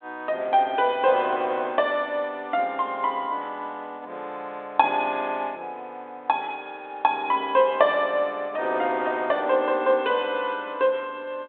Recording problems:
telephone audio; 220 Hz to 3.7 kHz, G.726

